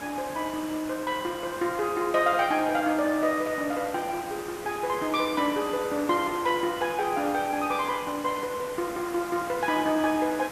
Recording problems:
background hiss; slope -4 dB per octave, SNR 13 dB

